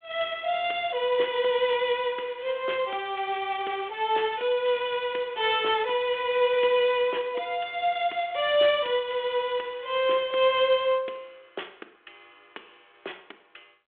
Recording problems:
telephone audio; 300 Hz to 3.5 kHz, G.726

